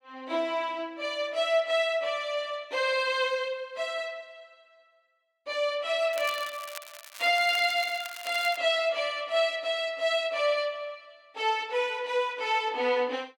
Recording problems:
crackling; from 6 to 8.5 s; loose cable, SNR 15 dB

